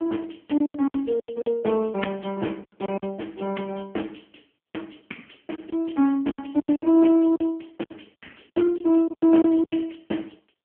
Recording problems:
telephone audio; 220 Hz to 3.3 kHz, AMR-NB
lost packets; 12% of the sound replaced, filled with silence

